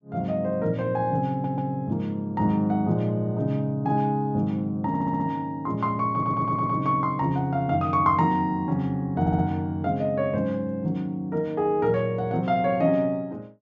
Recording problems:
treble missing; nothing above 8 kHz
stutter; 4 times, first at 1.5 s

